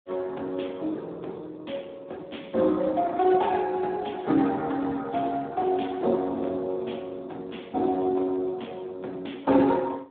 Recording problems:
phone line; 170 Hz to 3.7 kHz, Speex

